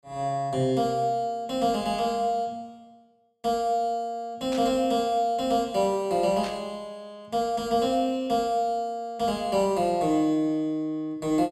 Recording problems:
burst of static; at 4.5 s and at 6.5 s; peak -9 dB vs average level

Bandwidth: 14.5 kHz